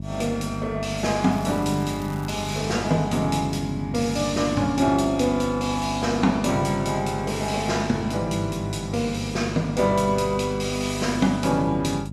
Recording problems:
hum; 50 Hz, harmonics up to 400 Hz, SNR 9 dB
crackling; from 1.5 to 2.5 s; loose cable, SNR 22 dB

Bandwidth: 15 kHz